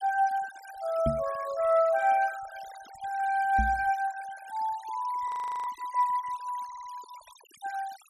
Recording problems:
denoising artefacts; signal-to-artefact ratio 20 dB
microphone thump; at 1 s and at 3.5 s; peak +2 dB vs average level
audio freezing; at 5.5 s
stutter; at 6.5 s

